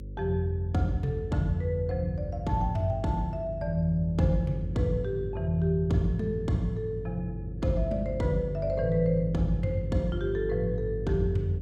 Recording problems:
hum; 50 Hz, harmonics up to 550 Hz, SNR 9 dB

